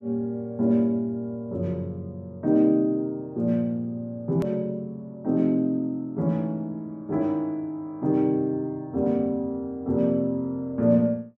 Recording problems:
edit click; at 4.5 s

